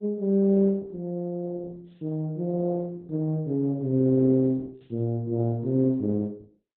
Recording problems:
lossy codec; Opus, log-spectral distance 2 dB

